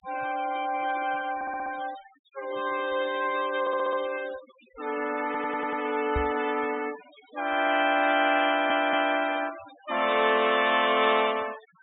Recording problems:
treble missing; nothing above 4 kHz
noise reduction artefacts; signal-to-artefact ratio 16 dB
stutter; 4 times, first at 1.5 s
knock on the microphone; at 6 s; peak -2 dB vs average level

